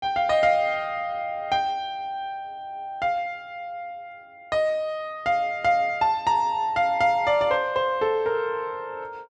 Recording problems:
none

